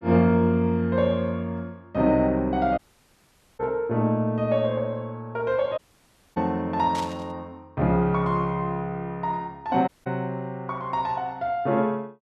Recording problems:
audio cutting out; at 3 s for 1 s, at 6 s for 0.5 s and at 10 s
burst of static; at 7 s; peak -7 dB vs average level

